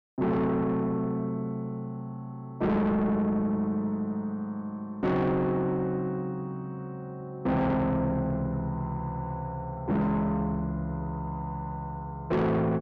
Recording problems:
distortion; soft clipping, signal-to-distortion ratio 8 dB

